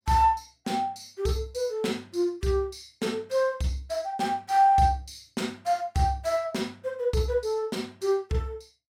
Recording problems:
none

